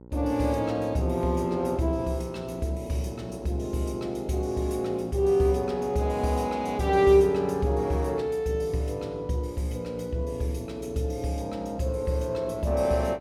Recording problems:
hum; 60 Hz, harmonics up to 1 kHz, SNR 18 dB

